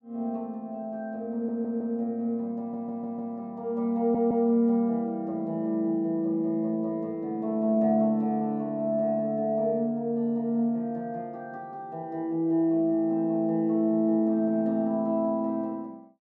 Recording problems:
stutter; at 1.5 s, at 2.5 s and at 4 s

